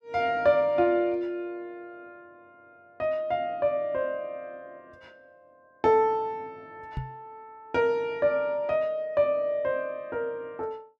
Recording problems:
microphone bump; at 7 s; peak -3 dB vs average level

